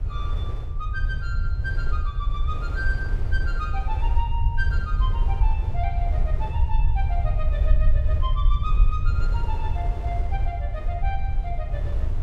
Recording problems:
rumble; below 68 Hz, SNR -9 dB
wind noise; below 690 Hz, SNR 9 dB

